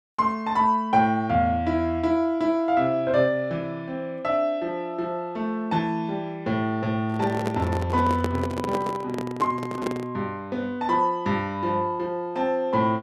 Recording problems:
handling noise; from 7 to 10 s; peak +1 dB vs average level

